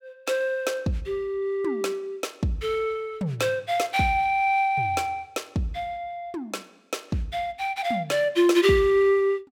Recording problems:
none

